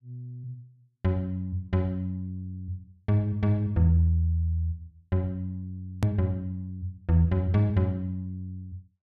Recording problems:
edit click; at 6 s

